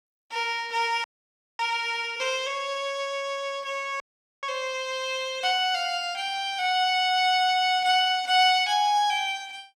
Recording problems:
audio freezing; at 1 s for 0.5 s and at 4 s

